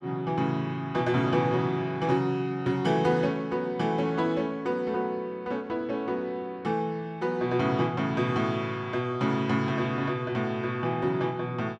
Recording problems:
none

